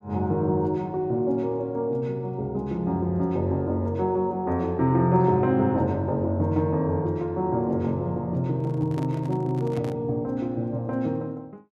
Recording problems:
microphone handling noise; from 8.5 to 10 s; peak -9 dB vs average level

